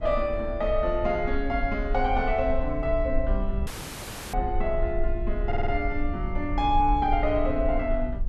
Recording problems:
rumble; below 52 Hz, strongest tone 18 Hz, SNR 5 dB
audio cutting out; at 3.5 s for 0.5 s
stutter; at 5.5 s

